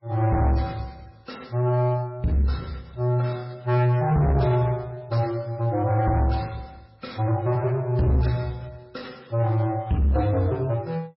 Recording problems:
lossy codec; MP3, then MP3, log-spectral distance 2 dB, nothing above 5.2 kHz
distorted audio; soft clipping, signal-to-distortion ratio 10 dB

